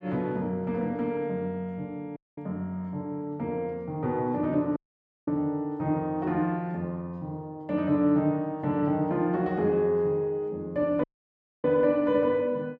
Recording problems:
audio cutting out; at 2 s, at 5 s for 0.5 s and at 11 s for 0.5 s

